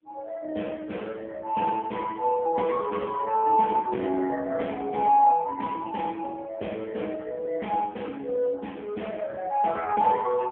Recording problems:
telephone audio; 240 Hz to 3.3 kHz, AMR-NB

